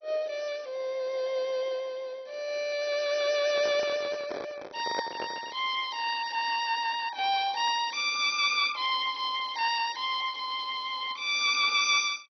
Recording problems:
codec artefacts; MP2, log-spectral distance 4 dB, nothing above 5.8 kHz
handling noise; from 3.5 to 5.5 s; peak -1 dB vs average level

